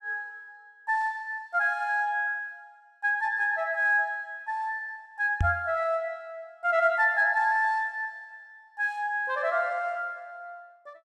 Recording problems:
microphone bump; at 5.5 s; peak +4 dB vs average level

